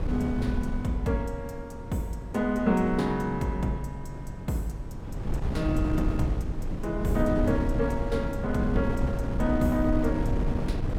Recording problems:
wind noise; below 170 Hz, SNR 3 dB

